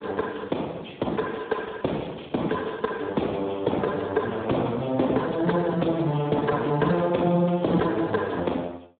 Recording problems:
telephone audio; 150 Hz to 3.7 kHz, Speex

